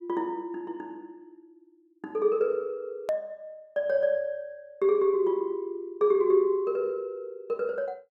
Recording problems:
edit click; at 3 s

